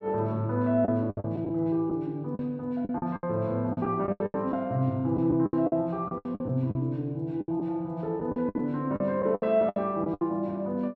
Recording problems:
packet loss; 13% of the sound replaced, filled with the last packet

